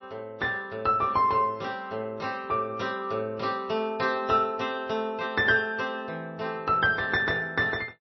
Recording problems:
codec artefacts; MP3, log-spectral distance 2 dB, nothing above 5.5 kHz

